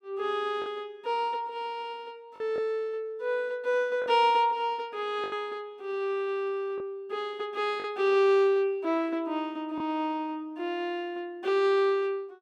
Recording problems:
packet loss; 2% of the sound replaced, filled with the last packet

